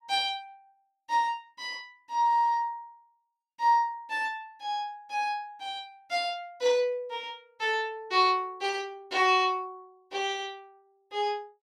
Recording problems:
none

